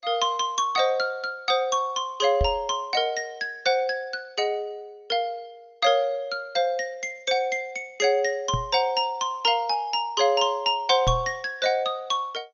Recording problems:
lossy compression; MP2, log-spectral distance 2 dB, nothing above 6.3 kHz
microphone thump; at 2.5 s, at 8.5 s and at 11 s; peak +2 dB vs average level

